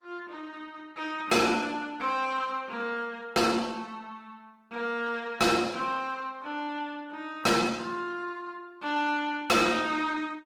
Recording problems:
lossy compression; Opus, log-spectral distance 3 dB, nothing above 17.7 kHz
distorted audio; soft clipping, signal-to-distortion ratio 7 dB

